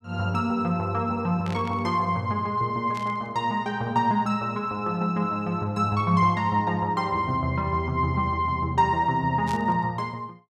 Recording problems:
static burst; at 1.5 s, at 3 s and at 9.5 s; peak -10 dB vs average level

